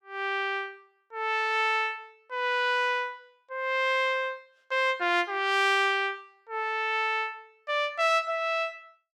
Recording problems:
none

